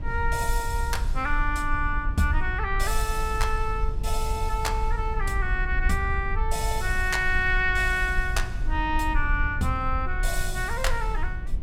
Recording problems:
rumble; below 56 Hz, SNR 3 dB

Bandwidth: 17 kHz